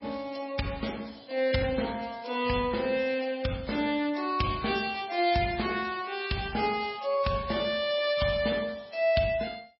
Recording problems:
codec artefacts; MP3, log-spectral distance 5 dB, nothing above 5.3 kHz

